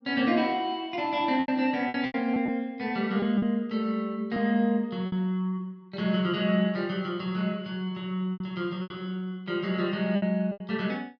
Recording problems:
lost packets; 6% of the sound replaced, filled with repeated pitch periods

